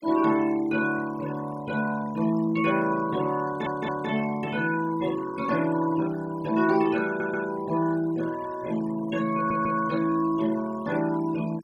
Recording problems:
noise reduction artefacts; signal-to-artefact ratio 18 dB
audio stuttering; at 3.5 s, at 7 s and at 9.5 s

